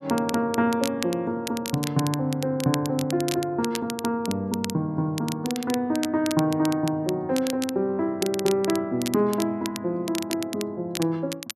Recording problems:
crackling; vinyl, SNR 10 dB

